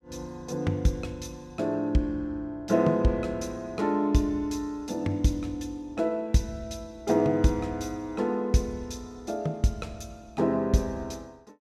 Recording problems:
none

